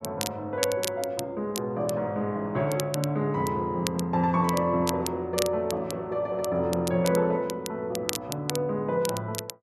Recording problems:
crackling; vinyl, SNR 9 dB

